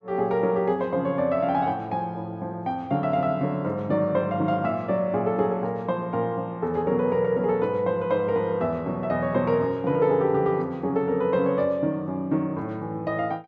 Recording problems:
none

